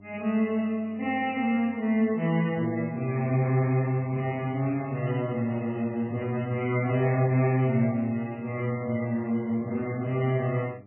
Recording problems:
codec artefacts; MP3, log-spectral distance 2 dB, nothing above 2.9 kHz
hum; 50 Hz, harmonics up to 1 kHz, SNR 25 dB

